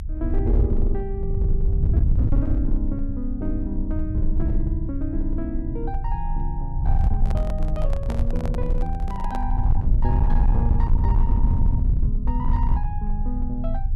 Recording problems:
distortion; hard clipping, uneven, signal-to-distortion ratio 11 dB
low-frequency rumble; below 72 Hz, strongest tone 26 Hz, SNR -6 dB
handling noise; from 7 to 9.5 s; peak 0 dB vs average level

